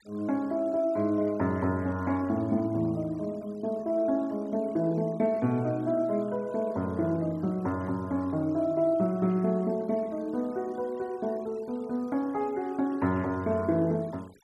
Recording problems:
noise reduction artefacts; signal-to-artefact ratio 27 dB

